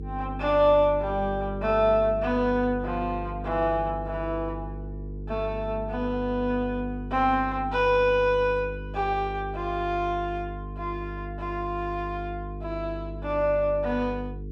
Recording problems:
hum; 50 Hz, harmonics up to 450 Hz, SNR 10 dB

